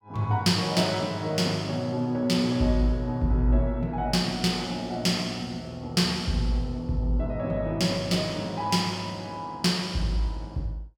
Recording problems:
none

